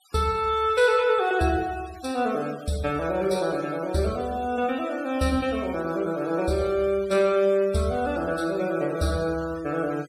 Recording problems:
denoising artefacts; signal-to-artefact ratio 21 dB

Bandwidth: 14.5 kHz